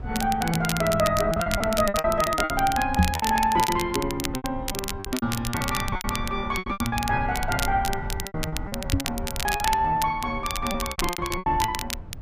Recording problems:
rumble; below 100 Hz, SNR 11 dB
crackling; vinyl, SNR 7 dB
packet loss; 15% of the sound replaced, filled with repeated pitch periods
microphone bump; at 3 s and at 9 s; peak +9 dB vs average level

